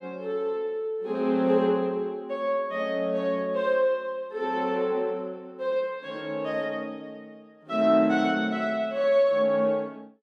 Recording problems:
none

